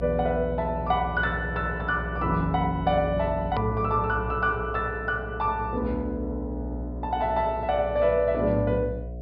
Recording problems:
treble missing; nothing above 5.5 kHz
hum; 60 Hz, harmonics up to 720 Hz, SNR 9 dB
hard cut with a click; at 3.5 s

